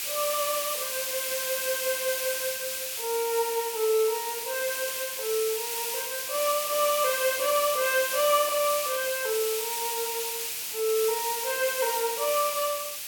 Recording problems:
background hiss; SNR 1 dB

